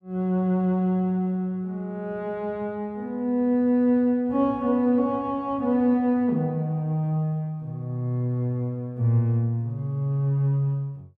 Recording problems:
none

